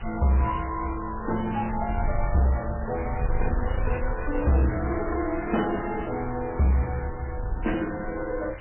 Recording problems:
lossy compression; AAC, then MP3, log-spectral distance 11 dB, nothing above 2.9 kHz
distortion; soft clipping, signal-to-distortion ratio 11 dB
background hiss; SNR 14 dB
wind noise; below 74 Hz, SNR 8 dB

